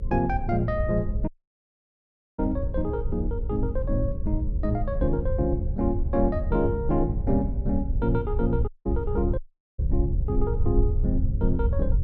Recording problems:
hum; 60 Hz, harmonics up to 540 Hz, SNR 15 dB
rumble; below 82 Hz, SNR 1 dB
dropout; at 1.5 s for 1 s, at 8.5 s and at 9.5 s

